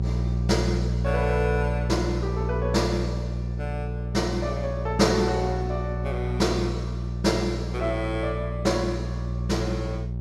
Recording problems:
hum; 60 Hz, harmonics up to 540 Hz, SNR 1 dB

